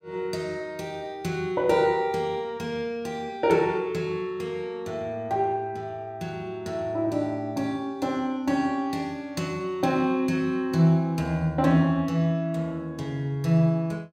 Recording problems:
none

